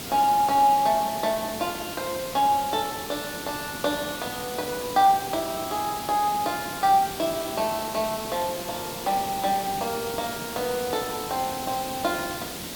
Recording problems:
hiss; SNR 8 dB

